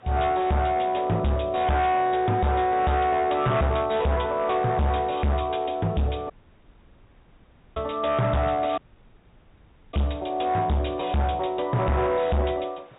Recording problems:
treble cut off; nothing above 4 kHz
distortion; hard clipping, uneven, signal-to-distortion ratio 6 dB
hiss; SNR 28 dB
dropout; at 6.5 s for 1.5 s and at 9 s for 1 s

